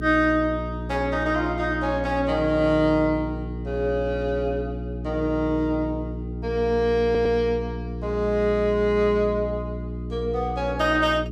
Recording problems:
electrical hum; 60 Hz, harmonics up to 420 Hz, SNR 8 dB
stutter; at 7 s

